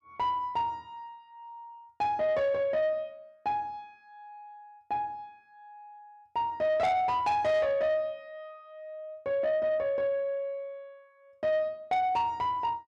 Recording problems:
distorted audio; soft clipping, signal-to-distortion ratio 11 dB

